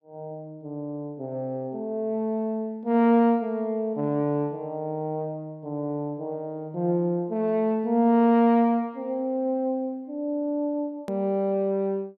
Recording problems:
hard cut with a click; at 11 s

